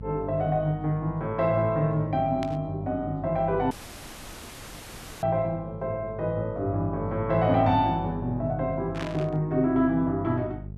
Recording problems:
hum; 50 Hz, harmonics up to 450 Hz, SNR 14 dB
burst of static; at 2.5 s and at 9 s; peak -6 dB vs average level
dropout; at 3.5 s for 1.5 s

